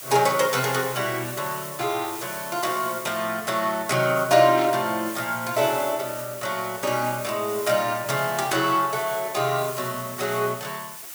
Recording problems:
hiss; slope +1 dB per octave, SNR 11 dB
static burst; at 4.5 s; peak -7 dB vs average level

